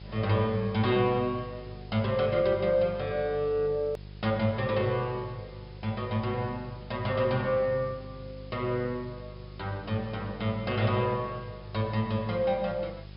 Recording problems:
low-pass filter; nothing above 5.5 kHz
hum; 50 Hz, harmonics up to 750 Hz, SNR 16 dB
background hiss; SNR 27 dB
edit click; at 4 s

